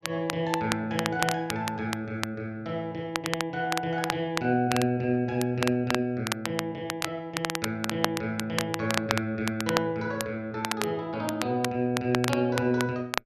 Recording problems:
crackling; vinyl, SNR 5 dB

